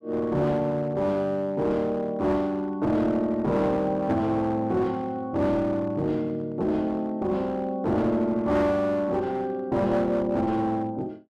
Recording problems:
distortion; hard clipping, uneven, signal-to-distortion ratio 10 dB

